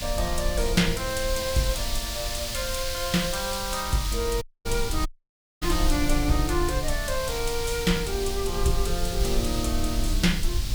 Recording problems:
hiss; slope +5 dB per octave, SNR 4 dB
rumble; below 60 Hz, SNR 5 dB
audio cutting out; at 4.5 s and at 5 s for 0.5 s

